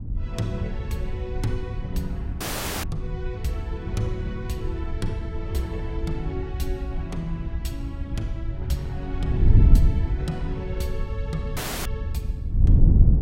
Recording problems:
wind noise; below 96 Hz, SNR -6 dB
audio cutting out; at 2.5 s and at 12 s

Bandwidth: 16 kHz